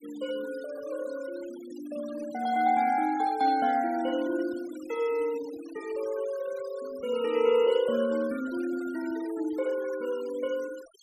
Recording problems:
noise reduction artefacts; signal-to-artefact ratio 19 dB

